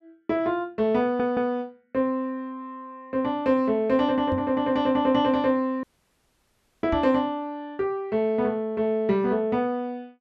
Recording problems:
stutter; at 1 s
microphone thump; at 4.5 s and at 7 s; peak -3 dB vs average level
dropout; at 6 s for 1 s

